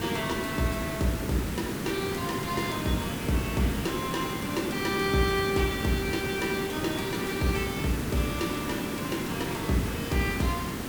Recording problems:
background hiss; SNR 3 dB

